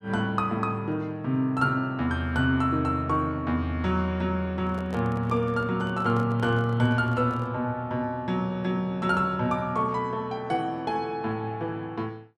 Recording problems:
microphone handling noise; from 4.5 to 7.5 s; peak -7 dB vs average level

